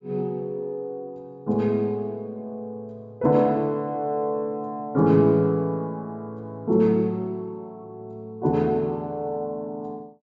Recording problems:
low-pass filter; nothing above 8 kHz

